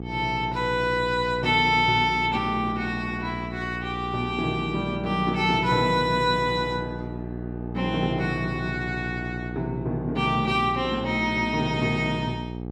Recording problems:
hum; 60 Hz, harmonics up to 900 Hz, SNR 9 dB

